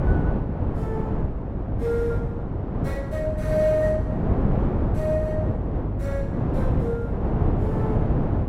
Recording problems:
electrical hum; 50 Hz, harmonics up to 400 Hz, SNR 5 dB
wind noise; below 300 Hz, SNR -3 dB

